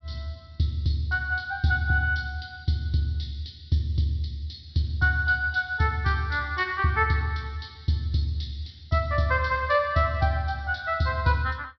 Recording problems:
treble cut off; nothing above 5.5 kHz

